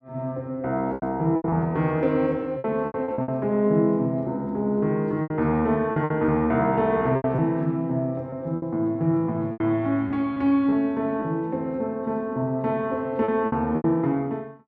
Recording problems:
lost packets; 8% of the sound replaced, filled with repeated pitch periods

